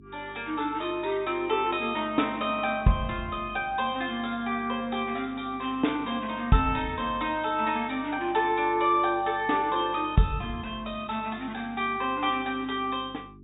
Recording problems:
treble missing; nothing above 4 kHz
hum; 50 Hz, harmonics up to 400 Hz, SNR 22 dB

